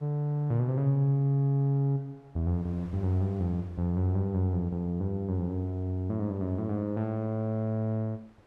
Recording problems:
wind noise; below 1.2 kHz, SNR 30 dB

